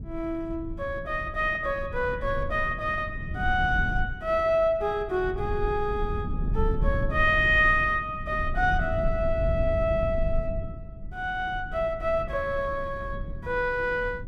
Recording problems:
rumble; below 98 Hz, SNR 8 dB

